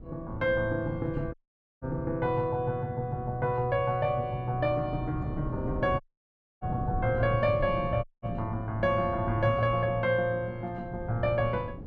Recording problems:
wind on the microphone; below 210 Hz, SNR 10 dB
dropout; at 1.5 s, at 6 s for 0.5 s and at 8 s

